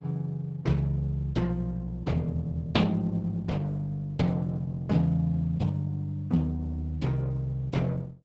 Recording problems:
lossy codec; Opus, log-spectral distance 2 dB, nothing above 7.8 kHz

